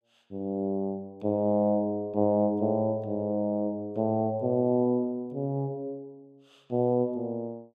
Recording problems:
none

